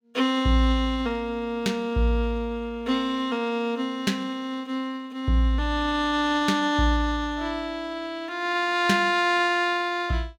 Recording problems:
none

